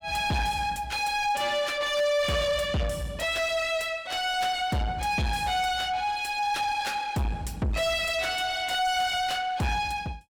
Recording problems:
distorted audio; soft clipping, signal-to-distortion ratio 7 dB

